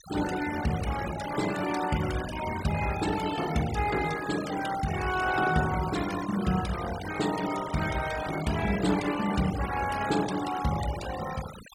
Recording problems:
denoising artefacts; signal-to-artefact ratio 10 dB

